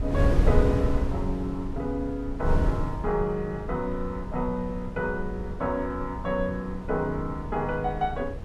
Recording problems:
wind on the microphone; below 110 Hz, SNR 2 dB

